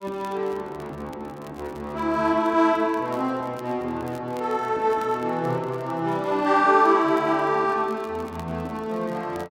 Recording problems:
crackle; vinyl, SNR 29 dB

